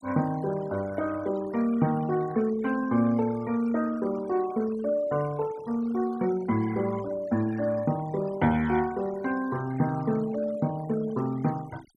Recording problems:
noise reduction artefacts; signal-to-artefact ratio 19 dB

